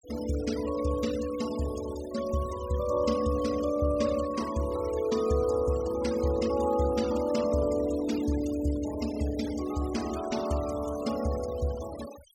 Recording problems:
denoising artefacts; signal-to-artefact ratio 15 dB

